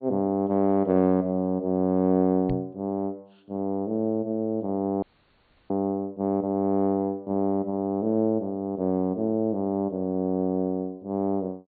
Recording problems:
treble cut off; nothing above 4.5 kHz
microphone bump; at 2.5 s; peak -2 dB vs average level
frozen audio; at 5 s for 0.5 s

